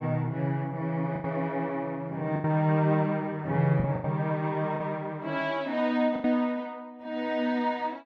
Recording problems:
packet loss; 5% of the sound replaced, filled with the last packet

